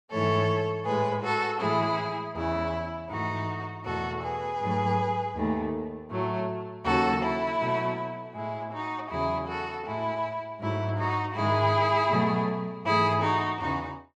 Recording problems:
none

